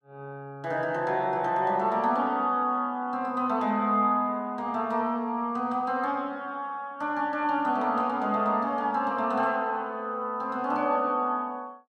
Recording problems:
none

